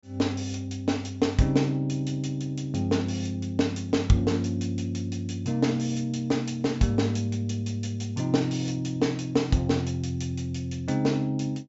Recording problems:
low-pass filter; nothing above 8 kHz

